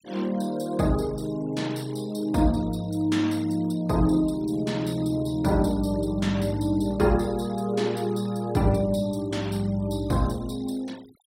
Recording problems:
noise reduction artefacts; signal-to-artefact ratio 22 dB

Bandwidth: 16 kHz